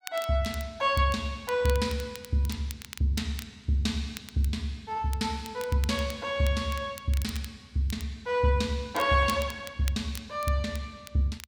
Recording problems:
crackle; vinyl, SNR 16 dB

